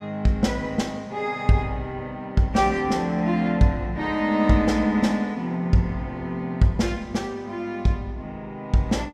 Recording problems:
none

